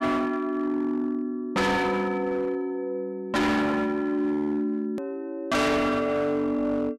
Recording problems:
distortion; hard clipping, signal-to-distortion ratio 6 dB
edit click; at 5 s

